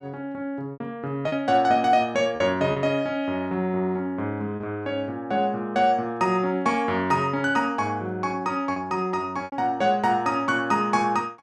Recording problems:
packet loss; 3% of the sound replaced, filled with repeated pitch periods

